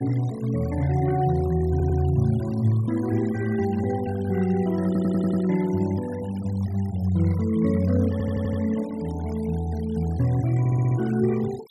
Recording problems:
denoising artefacts; signal-to-artefact ratio 21 dB
audio stuttering; 4 times, first at 1.5 s

